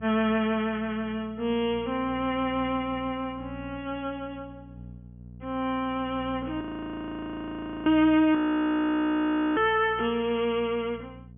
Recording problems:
treble missing; nothing above 3.3 kHz
hum; 60 Hz, harmonics up to 480 Hz, SNR 19 dB
frozen audio; at 6.5 s for 1.5 s and at 8.5 s for 1 s

